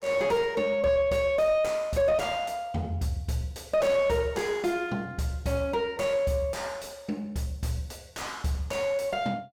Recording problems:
distortion; soft clipping, signal-to-distortion ratio 7 dB

